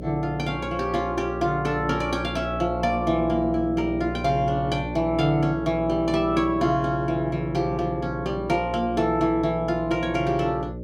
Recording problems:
hum; 60 Hz, harmonics up to 600 Hz, SNR 9 dB

